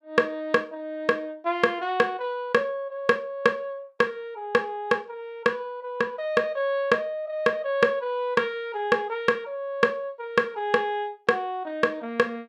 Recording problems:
none

